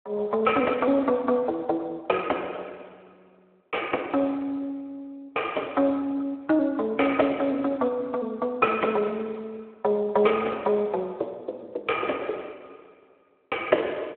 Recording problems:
phone line; 320 Hz to 3.6 kHz, Speex

